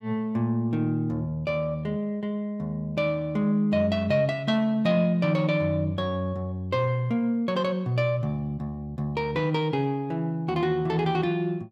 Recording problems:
none

